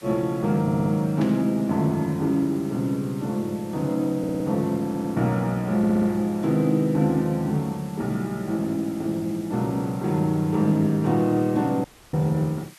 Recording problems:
hiss; SNR 24 dB
stutter; 4 times, first at 0.5 s
static burst; at 1 s; peak -9 dB vs average level
audio cutting out; at 12 s

